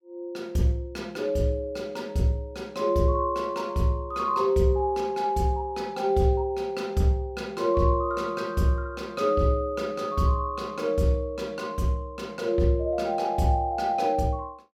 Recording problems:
none

